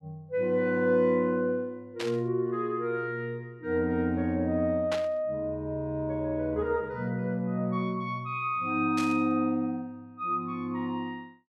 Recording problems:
burst of static; at 2 s, at 5 s and at 9 s; peak -2 dB vs average level

